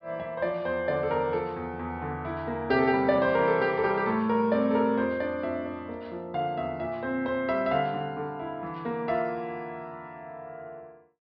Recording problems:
treble cut off; nothing above 5.5 kHz

